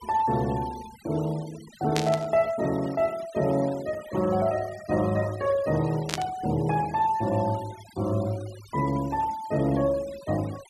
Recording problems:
noise reduction artefacts; signal-to-artefact ratio 19 dB
burst of static; at 2 s and at 6 s; peak +3 dB vs average level

